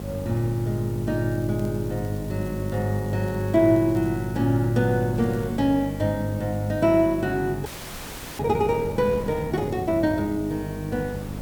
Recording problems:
mains hum; 50 Hz, harmonics up to 800 Hz, SNR 8 dB
hiss; slope -1 dB per octave, SNR 23 dB
wind on the microphone; below 560 Hz, SNR 22 dB
crackling; from 1.5 to 4.5 s and at 5 s; loose cable, SNR 30 dB
audio freezing; at 7.5 s for 0.5 s

